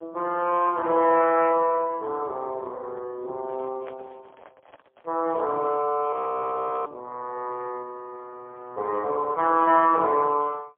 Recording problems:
telephone audio; 300 Hz to 3.1 kHz, AMR-NB, then MP3
handling noise; from 3.5 to 6 s; peak -16 dB vs average level
frozen audio; at 6 s for 0.5 s and at 8 s for 1 s

